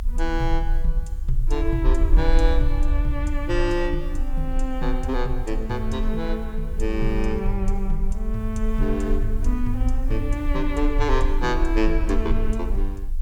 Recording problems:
background hiss; SNR 29 dB
low-frequency rumble; below 44 Hz, strongest tone 24 Hz, SNR 0 dB

